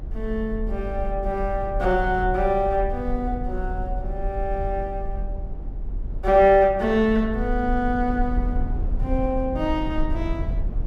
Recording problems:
low-frequency rumble; below 54 Hz, strongest tone 38 Hz, SNR 7 dB

